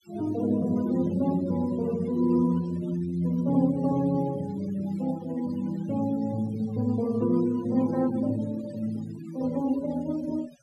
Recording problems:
noise reduction artefacts; signal-to-artefact ratio 19 dB

